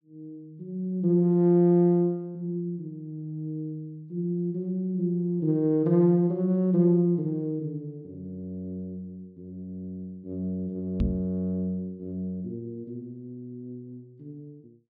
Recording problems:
microphone thump; at 11 s; peak +3 dB vs average level

